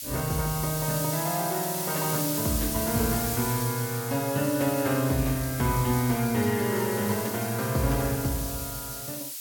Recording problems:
hiss; slope +6 dB per octave, SNR 5 dB

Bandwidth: 17 kHz